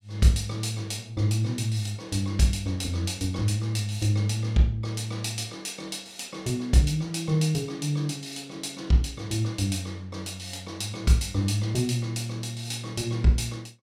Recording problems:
none

